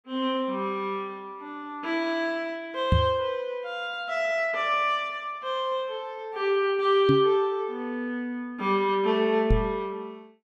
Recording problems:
microphone bump; at 3 s, at 7 s and at 9.5 s; peak +7 dB vs average level

